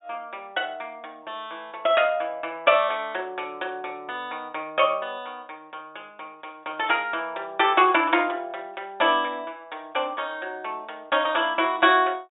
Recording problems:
treble cut off; nothing above 4 kHz

